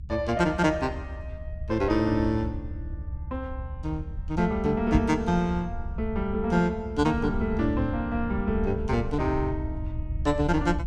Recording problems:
low-frequency rumble; below 86 Hz, SNR 8 dB
knock on the microphone; at 5 s; peak +4 dB vs average level

